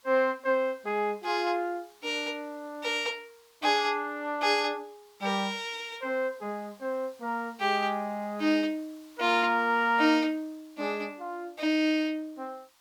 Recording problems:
background hiss; SNR 29 dB

